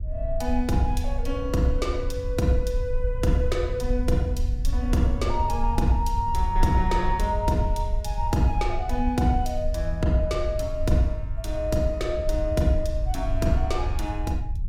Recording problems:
low-frequency rumble; below 66 Hz, SNR 3 dB

